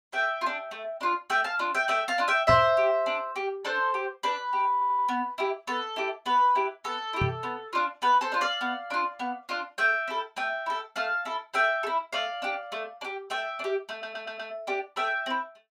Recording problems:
microphone bump; at 2.5 s and at 7 s; peak +2 dB vs average level
stutter; at 4.5 s and at 14 s

